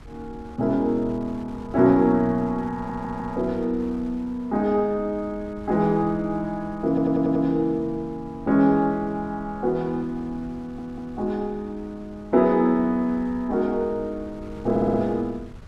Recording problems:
wind on the microphone; below 140 Hz, SNR 21 dB
audio stuttering; 4 times, first at 3 s

